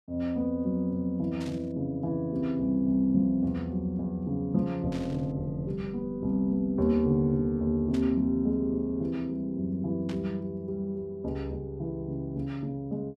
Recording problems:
burst of static; 4 times, first at 1.5 s; peak -11 dB vs average level

